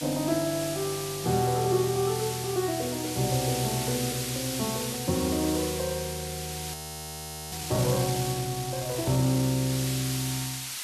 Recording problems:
background hiss; slope +4 dB per octave, SNR 5 dB
frozen audio; at 6.5 s for 1 s

